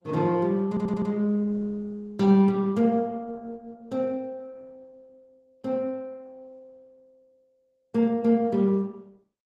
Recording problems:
lossy compression; Opus, log-spectral distance 2 dB, nothing above 14.1 kHz
stutter; at 0.5 s

